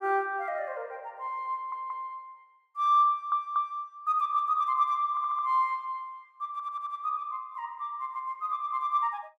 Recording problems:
stutter; 4 times, first at 1.5 s

